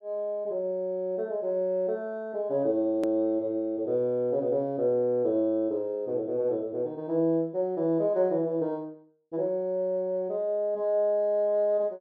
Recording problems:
edit click; at 3 s

